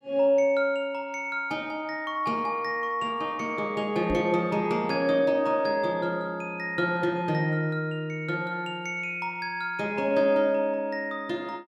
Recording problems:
microphone bump; at 4 s; peak -1 dB vs average level

